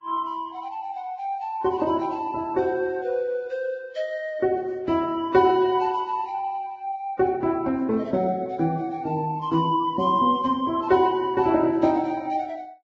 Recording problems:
lossy compression; Vorbis, log-spectral distance 2 dB

